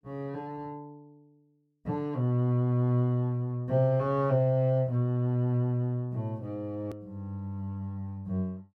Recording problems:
edit click; at 7 s

